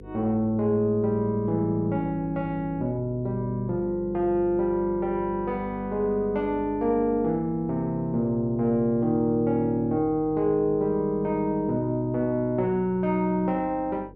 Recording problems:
electrical hum; 50 Hz, harmonics up to 500 Hz, SNR 18 dB

